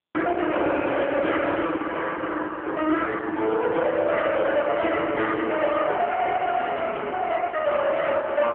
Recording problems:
phone line; 260 Hz to 3.3 kHz, AMR-NB
distortion; soft clipping, signal-to-distortion ratio 9 dB

